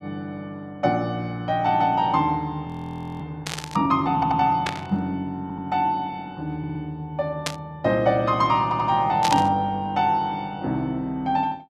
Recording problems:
audio freezing; at 2.5 s for 0.5 s
static burst; 4 times, first at 3.5 s; peak +2 dB vs average level
audio stuttering; 4 times, first at 4 s

